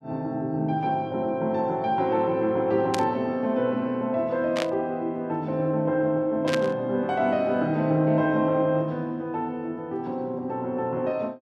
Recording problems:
burst of static; at 3 s, at 4.5 s and at 6.5 s; peak +1 dB vs average level

